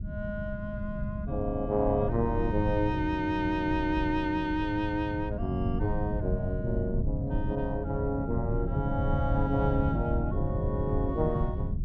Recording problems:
rumble; below 140 Hz, SNR 3 dB

